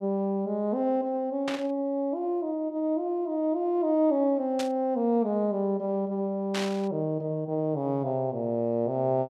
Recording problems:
static burst; at 1.5 s, at 4.5 s and at 6.5 s; peak -2 dB vs average level

